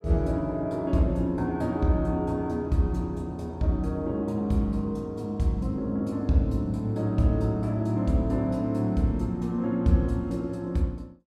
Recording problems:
none

